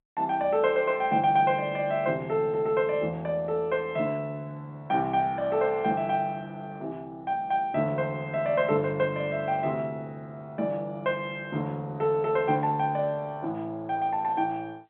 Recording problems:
telephone audio; 130 Hz to 3.7 kHz, G.711

